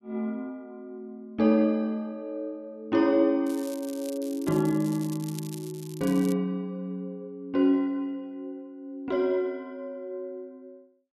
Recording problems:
crackling; from 3.5 to 6.5 s; loose cable, SNR 17 dB

